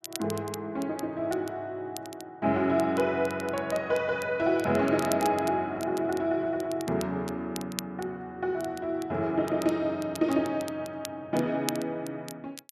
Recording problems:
crackling; vinyl, SNR 15 dB

